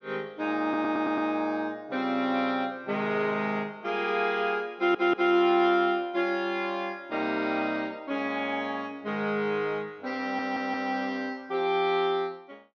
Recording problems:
treble missing; nothing above 6.4 kHz
audio stuttering; at 0.5 s, at 5 s and at 10 s

